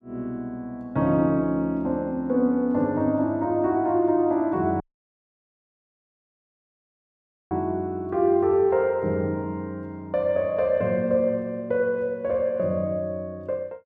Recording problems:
audio cutting out; at 5 s for 2.5 s

